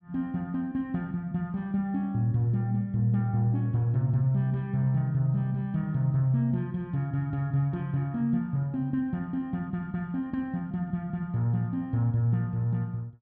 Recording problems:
none

